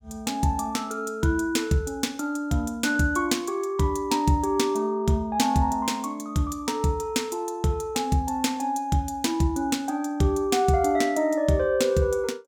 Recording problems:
none

